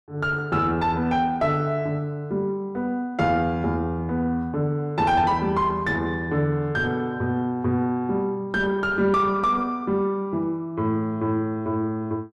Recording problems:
distorted audio; soft clipping, signal-to-distortion ratio 10 dB

